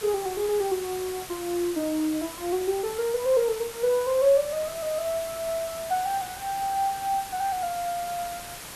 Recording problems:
hiss; slope -1 dB per octave, SNR 11 dB

